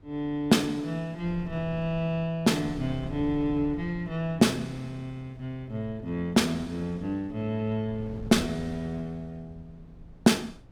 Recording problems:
wind noise; below 180 Hz, SNR 18 dB

